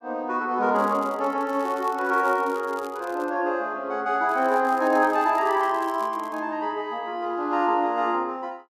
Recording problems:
crackle; from 0.5 to 3.5 s and from 4 to 6.5 s; loose cable, SNR 25 dB

